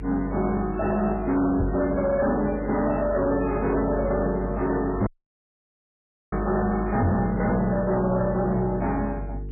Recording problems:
lossy compression; MP3, log-spectral distance 3 dB, nothing above 2.5 kHz
distorted audio; hard clipping, uneven, signal-to-distortion ratio 10 dB
electrical hum; 50 Hz, harmonics up to 450 Hz, SNR 10 dB
microphone thump; at 1.5 s, at 5 s and at 7 s; peak +4 dB vs average level
audio cutting out; at 5 s for 1.5 s

